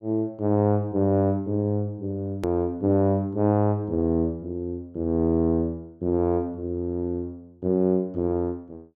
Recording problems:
click at an edit; at 2.5 s

